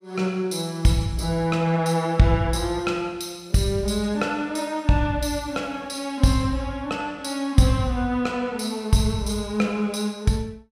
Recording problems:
none

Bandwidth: 15.5 kHz